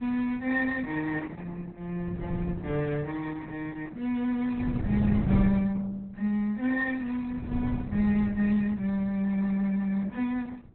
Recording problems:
lossy compression; Opus, log-spectral distance 2 dB, nothing above 4 kHz
wind noise; below 200 Hz, SNR 6 dB

